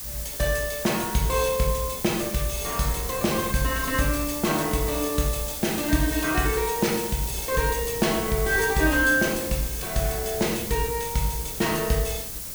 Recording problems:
hiss; slope +1 dB per octave, SNR 6 dB
wind noise; below 260 Hz, SNR 18 dB
crackling; from 3 to 4.5 s and from 5 to 7.5 s; loose cable, SNR 20 dB

